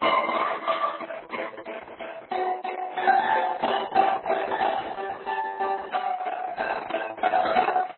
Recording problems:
lossy codec; Opus, then MP3, log-spectral distance 5 dB, nothing above 4 kHz

